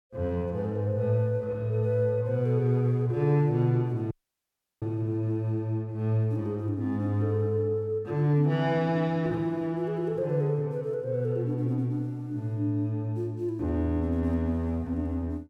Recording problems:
audio cutting out; at 4 s for 0.5 s

